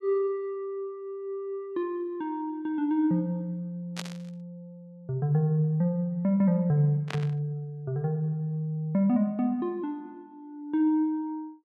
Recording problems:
static burst; at 4 s and at 7 s; peak -3 dB vs average level

